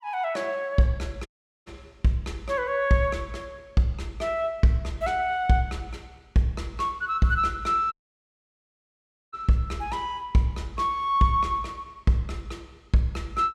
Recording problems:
dropout; at 1.5 s and at 8 s for 1.5 s

